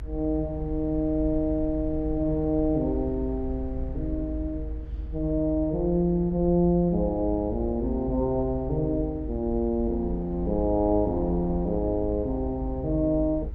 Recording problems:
rumble; below 72 Hz, strongest tone 52 Hz, SNR 9 dB

